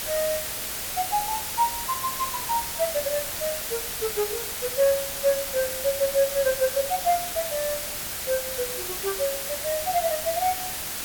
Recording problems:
background hiss; slope 0 dB per octave, SNR 1 dB

